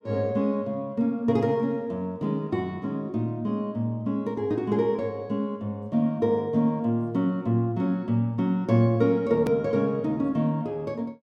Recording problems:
hard cut with a click; at 9.5 s

